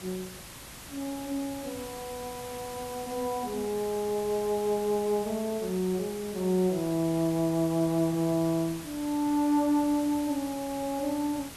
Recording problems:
background hiss; slope -2 dB per octave, SNR 13 dB

